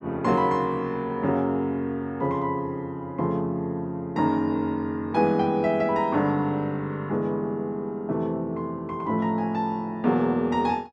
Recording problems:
none

